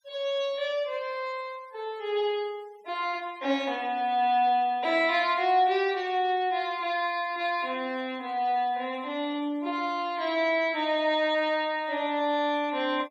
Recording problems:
noise reduction artefacts; signal-to-artefact ratio 26 dB

